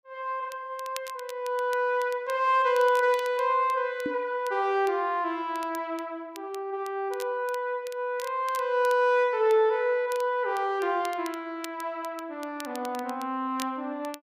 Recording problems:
crackle; vinyl, SNR 20 dB
knock on the microphone; at 4 s; peak -2 dB vs average level

